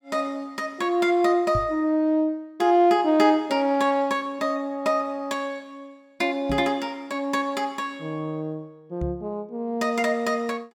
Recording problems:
microphone bump; at 1.5 s, at 6.5 s and at 9 s; peak -2 dB vs average level

